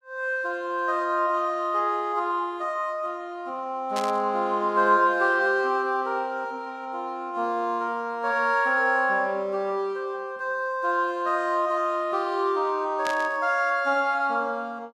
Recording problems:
burst of static; at 4 s and at 13 s; peak -5 dB vs average level

